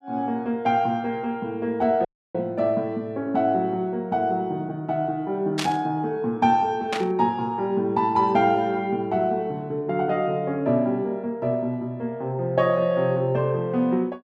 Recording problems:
dropout; at 2 s
burst of static; at 5.5 s and at 7 s; peak +1 dB vs average level

